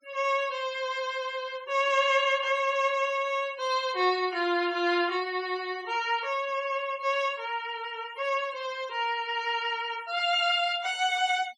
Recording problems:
denoising artefacts; signal-to-artefact ratio 21 dB

